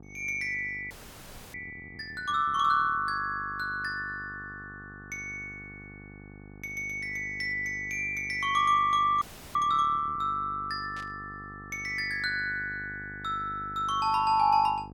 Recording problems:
electrical hum; 50 Hz, harmonics up to 1.2 kHz, SNR 19 dB
audio freezing; at 1 s for 0.5 s and at 9 s
burst of static; at 11 s; peak -15 dB vs average level

